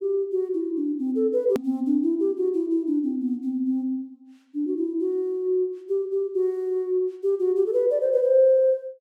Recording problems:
click at an edit; at 1.5 s

